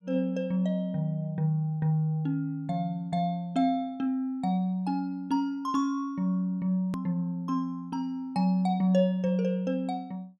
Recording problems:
click at an edit; at 7 s

